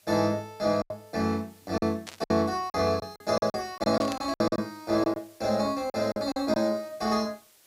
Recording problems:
background hiss; slope 0 dB per octave, SNR 28 dB
lost packets; 11% of the sound replaced, filled with silence
static burst; at 2 s and at 4 s; peak -5 dB vs average level

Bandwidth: 15.5 kHz